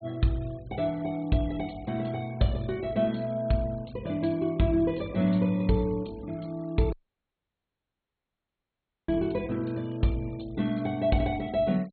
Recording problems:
treble missing; nothing above 4.3 kHz
denoising artefacts; signal-to-artefact ratio 26 dB
dropout; at 7 s for 2 s

